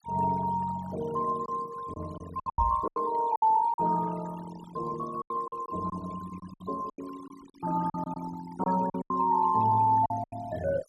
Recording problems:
noise reduction artefacts; signal-to-artefact ratio 17 dB
lost packets; 10% of the sound replaced, filled with silence
microphone bump; at 2.5 s; peak -1 dB vs average level

